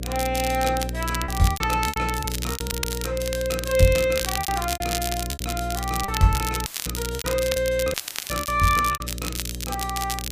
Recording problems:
hum; 60 Hz, harmonics up to 600 Hz, SNR 8 dB
crackle; vinyl, SNR 6 dB
packet loss; 11% of the sound replaced, filled with repeated pitch periods
audio cutting out; at 6.5 s and at 8 s; filled with static

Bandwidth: 15 kHz